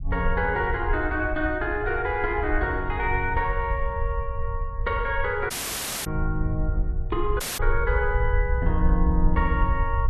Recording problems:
low-frequency rumble; below 66 Hz, SNR 2 dB
dropout; at 5.5 s for 0.5 s and at 7.5 s

